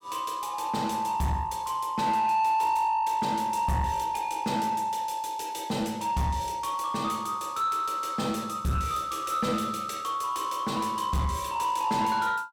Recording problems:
distortion; soft clipping, signal-to-distortion ratio 12 dB

